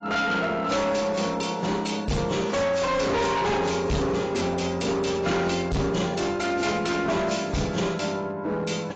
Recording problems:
codec artefacts; AAC, log-spectral distance 4 dB, nothing above 7.3 kHz
distortion; hard clipping, signal-to-distortion ratio 7 dB

